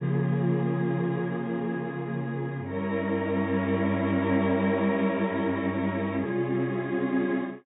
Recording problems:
treble cut off; nothing above 4 kHz

